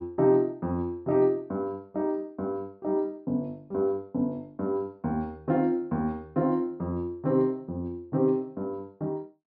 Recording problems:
low-pass filter; nothing above 5.5 kHz

